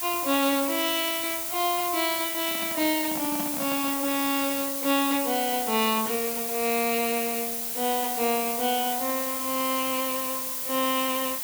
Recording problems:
hiss; slope +1 dB per octave, SNR 1 dB
handling noise; from 2.5 to 4 s; peak -4 dB vs average level

